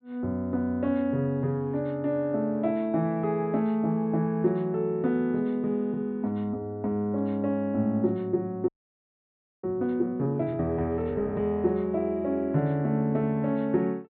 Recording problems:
treble cut off; nothing above 4.4 kHz
audio freezing; at 8.5 s for 1 s

